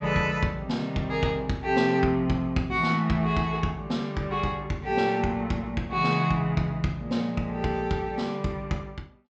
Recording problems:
low-pass filter; nothing above 8 kHz

